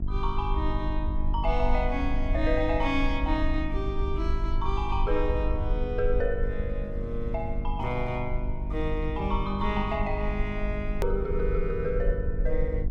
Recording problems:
hum; 50 Hz, harmonics up to 750 Hz, SNR 8 dB
low-frequency rumble; below 54 Hz, SNR 2 dB
edit click; at 11 s

